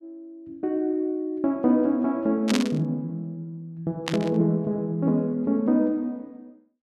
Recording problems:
burst of static; at 2.5 s and at 4 s; peak +1 dB vs average level

